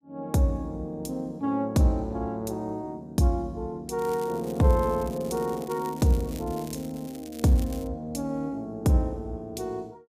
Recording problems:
crackle; from 4 to 8 s; loose cable, SNR 19 dB

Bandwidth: 15 kHz